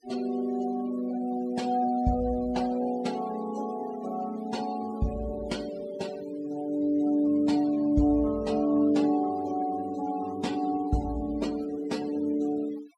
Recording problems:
noise reduction artefacts; signal-to-artefact ratio 20 dB

